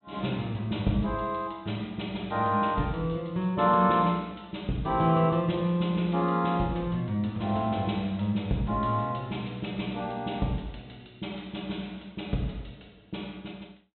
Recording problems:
treble missing; nothing above 4 kHz

